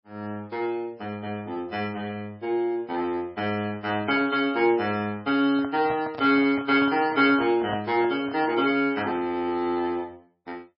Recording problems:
codec artefacts; MP3, log-spectral distance 2 dB, nothing above 4.5 kHz
microphone handling noise; from 5.5 to 8.5 s; peak -5 dB vs average level

